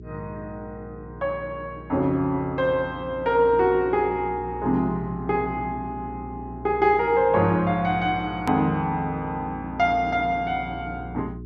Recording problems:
low-pass filter; nothing above 7.7 kHz
electrical hum; 60 Hz, harmonics up to 420 Hz, SNR 16 dB
hard cut with a click; at 8.5 s

